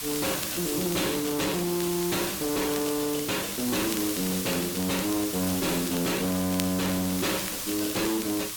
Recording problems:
lossy compression; Opus, log-spectral distance 4 dB, nothing above 18.3 kHz
distorted audio; hard clipping, signal-to-distortion ratio 8 dB
background hiss; SNR 3 dB
crackle; vinyl, SNR 14 dB

